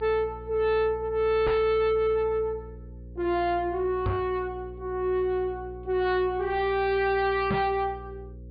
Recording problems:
treble cut off; nothing above 4.8 kHz
distorted audio; soft clipping, signal-to-distortion ratio 7 dB
hum; 60 Hz, harmonics up to 540 Hz, SNR 17 dB
knock on the microphone; at 1.5 s, at 4 s and at 7.5 s; peak +3 dB vs average level

